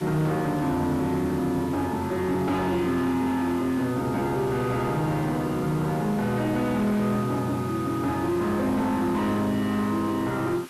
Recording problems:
distorted audio; soft clipping, signal-to-distortion ratio 11 dB
hiss; SNR 20 dB

